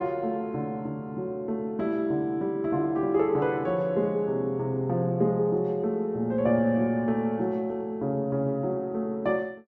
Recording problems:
none

